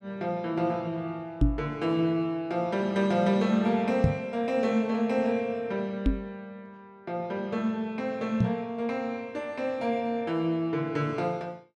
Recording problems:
microphone thump; 4 times, first at 1.5 s; peak +9 dB vs average level

